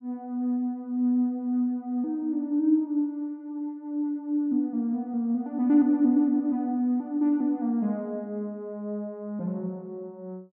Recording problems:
none

